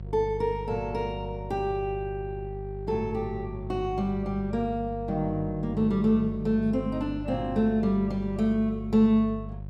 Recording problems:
hum; 50 Hz, harmonics up to 550 Hz, SNR 11 dB

